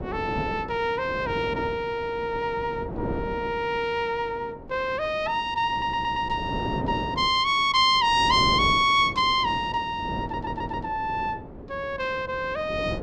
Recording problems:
wind on the microphone; below 450 Hz, SNR 11 dB
stutter; at 5.5 s and at 10 s

